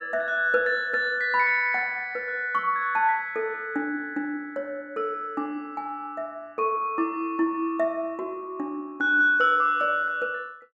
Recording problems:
none

